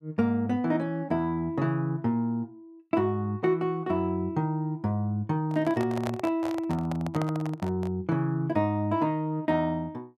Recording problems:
microphone handling noise; from 5.5 to 8 s; peak -2 dB vs average level

